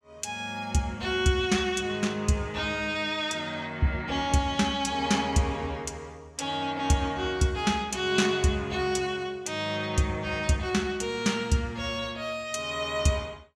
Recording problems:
none

